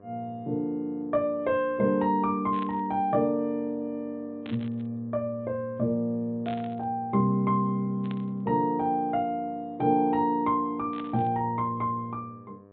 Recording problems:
treble cut off; nothing above 4 kHz
hum; 50 Hz, harmonics up to 1.7 kHz, SNR 26 dB
burst of static; 5 times, first at 2.5 s; peak -11 dB vs average level

